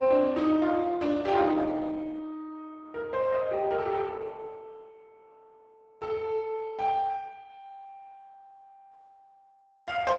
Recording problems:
lossy compression; Opus, log-spectral distance 3 dB

